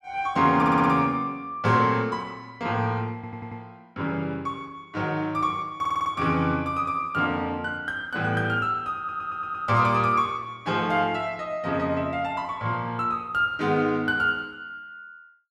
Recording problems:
stutter; 4 times, first at 0.5 s

